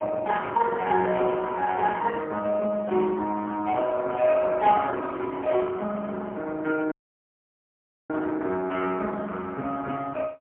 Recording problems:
phone line; 220 Hz to 3 kHz, AMR-NB, then MP3
audio cutting out; at 7 s for 1 s

